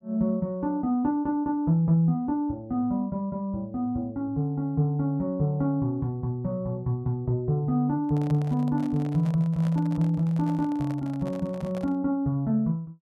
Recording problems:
handling noise; from 8 to 12 s; peak -10 dB vs average level

